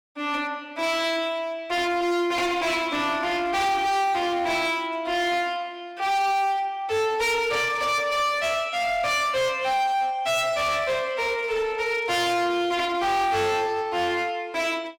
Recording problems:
distortion; hard clipping, uneven, signal-to-distortion ratio 7 dB

